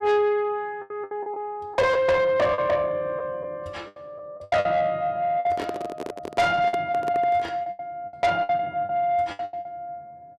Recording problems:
distorted audio; soft clipping, signal-to-distortion ratio 7 dB
packet loss; 13% of the sound replaced, filled with the last packet
handling noise; from 5.5 to 7.5 s; peak -3 dB vs average level

